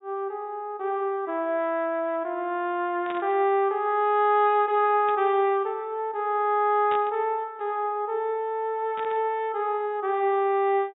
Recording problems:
treble cut off; nothing above 4 kHz
burst of static; 4 times, first at 3 s; peak -9 dB vs average level

